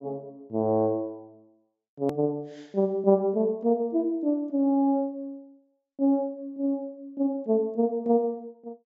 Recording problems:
treble cut off; nothing above 8 kHz
click at an edit; at 2 s

